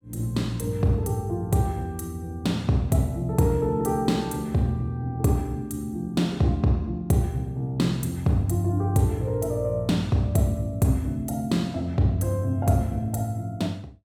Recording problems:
none

